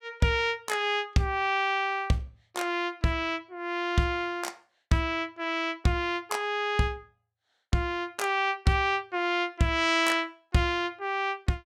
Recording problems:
none

